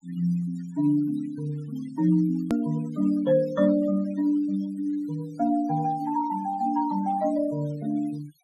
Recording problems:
noise reduction artefacts; signal-to-artefact ratio 22 dB
edit click; at 2.5 s

